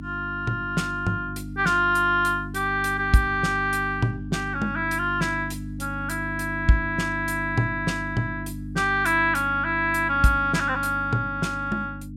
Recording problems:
hum; 50 Hz, harmonics up to 300 Hz, SNR 11 dB

